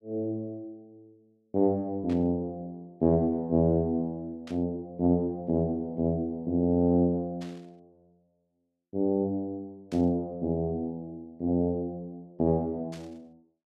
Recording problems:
static burst; 5 times, first at 2 s; peak -15 dB vs average level

